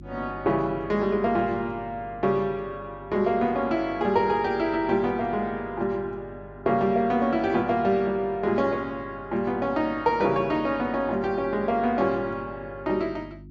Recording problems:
treble missing; nothing above 8 kHz
hum; 50 Hz, harmonics up to 350 Hz, SNR 20 dB

